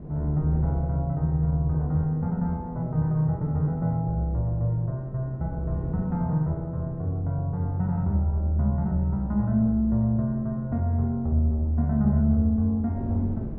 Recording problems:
wind noise; below 260 Hz, SNR 15 dB

